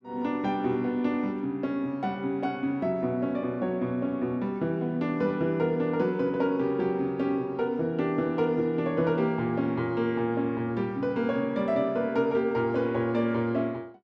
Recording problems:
none

